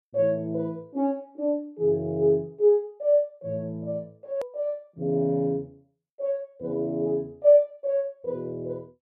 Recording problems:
edit click; at 4.5 s

